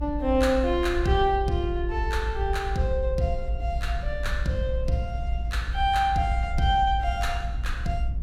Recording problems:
low-frequency rumble; below 60 Hz, strongest tone 56 Hz, SNR 4 dB

